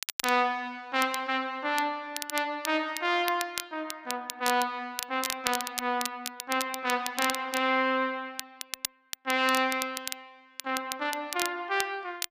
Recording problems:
crackling; vinyl, SNR 7 dB

